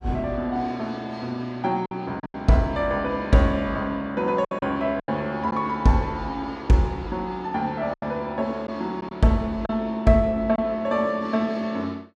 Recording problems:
lost packets; 4% of the sound replaced, filled with silence

